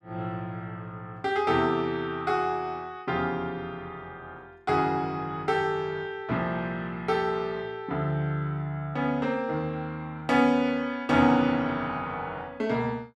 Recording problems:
none

